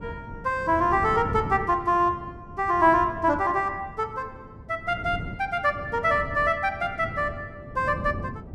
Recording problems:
wind noise; below 260 Hz, SNR 13 dB

